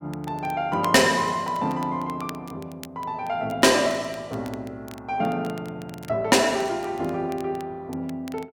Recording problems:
distortion; soft clipping, signal-to-distortion ratio 7 dB
crackle; vinyl, SNR 23 dB

